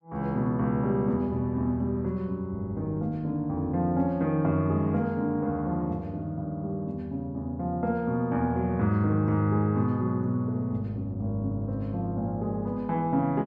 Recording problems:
none

